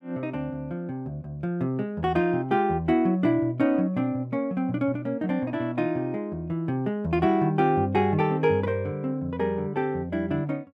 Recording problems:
none

